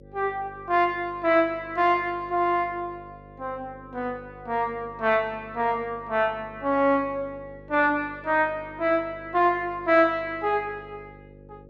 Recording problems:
hum; 50 Hz, harmonics up to 550 Hz, SNR 22 dB

